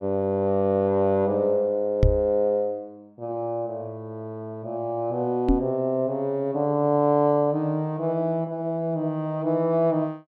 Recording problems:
microphone bump; at 2 s and at 5.5 s; peak +7 dB vs average level

